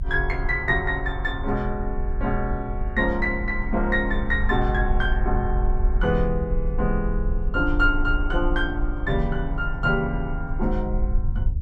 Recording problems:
low-frequency rumble; below 48 Hz, strongest tone 26 Hz, SNR 3 dB

